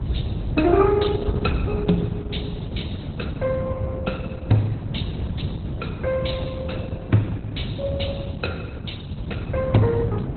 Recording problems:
lossy compression; Opus, log-spectral distance 3 dB, nothing above 4.1 kHz
rumble; below 160 Hz, SNR 3 dB

